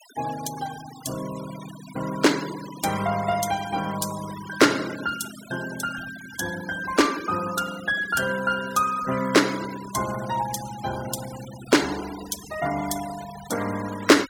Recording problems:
denoising artefacts; signal-to-artefact ratio 14 dB

